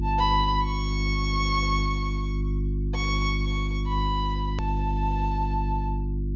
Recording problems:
treble cut off; nothing above 7.1 kHz
hum; 50 Hz, harmonics up to 350 Hz, SNR -1 dB
edit click; at 4.5 s

